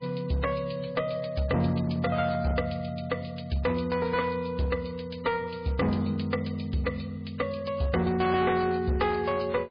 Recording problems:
lossy codec; MP3, log-spectral distance 4 dB, nothing above 4.5 kHz
distortion; hard clipping, uneven, signal-to-distortion ratio 10 dB

